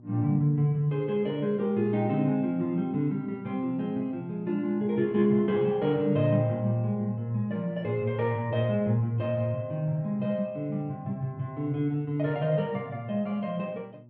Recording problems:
hum; 60 Hz, harmonics up to 600 Hz, SNR 23 dB

